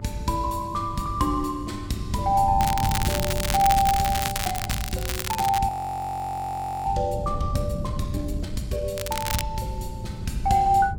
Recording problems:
hum; 50 Hz, harmonics up to 800 Hz, SNR 16 dB
wind on the microphone; below 150 Hz, SNR 8 dB
crackling; from 2.5 to 5.5 s and at 9 s; loose cable, SNR 4 dB
audio freezing; at 5.5 s for 1 s

